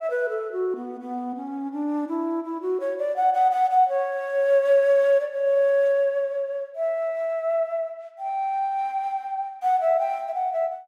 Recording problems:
none

